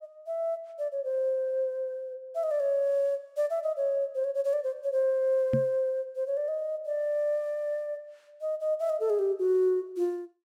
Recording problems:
microphone bump; at 5.5 s; peak +4 dB vs average level

